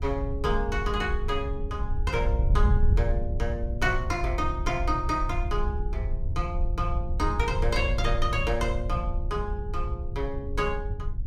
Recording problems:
wind noise; below 74 Hz, SNR 0 dB

